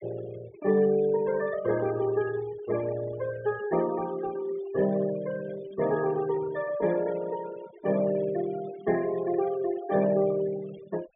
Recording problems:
low-pass filter; nothing above 3.6 kHz
noise reduction artefacts; signal-to-artefact ratio 17 dB

